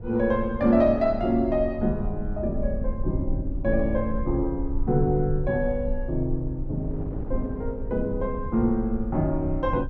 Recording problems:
low-frequency rumble; below 60 Hz, SNR 8 dB
wind on the microphone; below 290 Hz, SNR 18 dB

